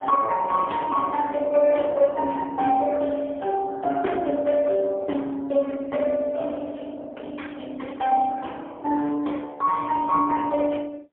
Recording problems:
telephone audio; 280 Hz to 3.3 kHz, AMR-NB, then MP3

